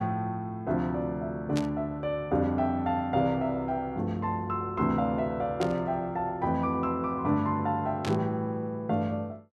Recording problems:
static burst; at 1.5 s, at 5.5 s and at 8 s; peak -3 dB vs average level

